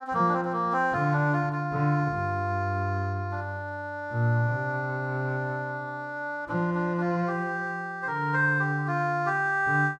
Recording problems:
none

